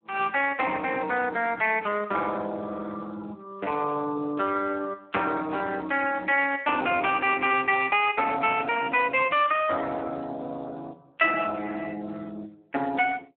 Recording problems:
telephone audio; 320 Hz to 3.5 kHz, Speex

